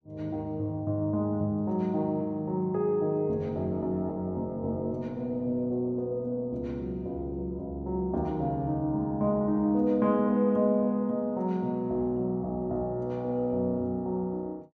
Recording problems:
none

